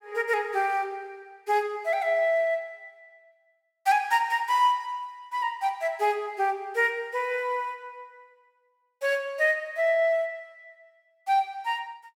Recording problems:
none

